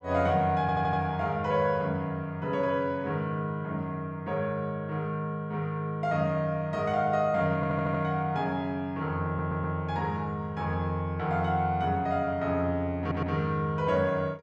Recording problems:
stutter; 4 times, first at 0.5 s

